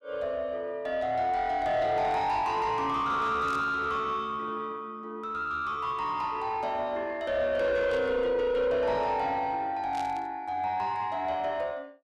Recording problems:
distortion; soft clipping, signal-to-distortion ratio 10 dB
static burst; 4 times, first at 2 s; peak -11 dB vs average level

